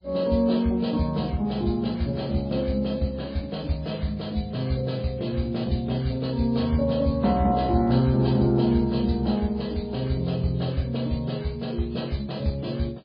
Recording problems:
codec artefacts; MP3, log-spectral distance 4 dB, nothing above 4.6 kHz

